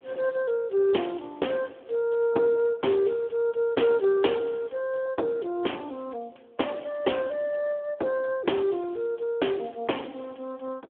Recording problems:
telephone audio; 280 Hz to 3.4 kHz, Speex

